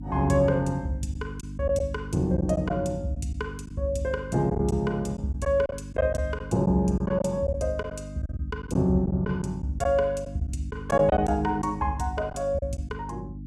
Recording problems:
hum; 50 Hz, harmonics up to 300 Hz, SNR 12 dB
packet loss; 6% of the sound replaced, filled with silence

